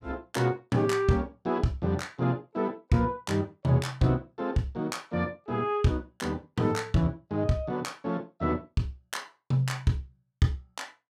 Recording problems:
none

